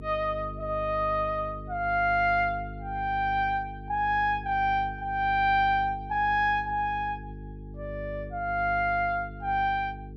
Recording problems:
mains hum; 50 Hz, harmonics up to 450 Hz, SNR 14 dB

